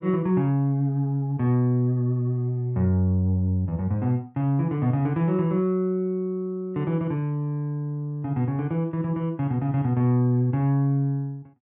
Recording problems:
none

